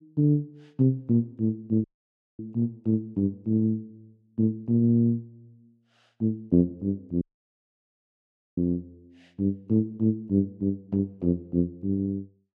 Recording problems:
audio cutting out; at 2 s for 0.5 s and at 7 s for 1.5 s

